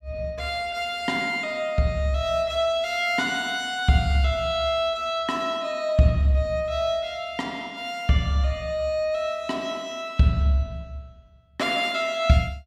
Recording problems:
none

